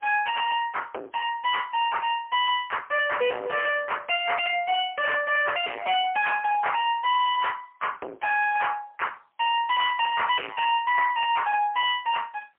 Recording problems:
phone line; 340 Hz to 3.2 kHz, AMR-NB, then MP3
distorted audio; hard clipping, uneven, signal-to-distortion ratio 4 dB

